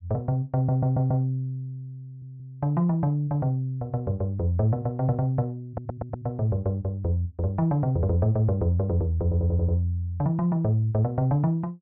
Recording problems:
audio stuttering; 4 times, first at 0.5 s

